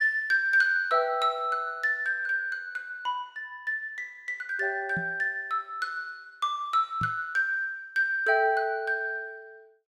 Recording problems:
microphone bump; at 5 s and at 7 s; peak -4 dB vs average level

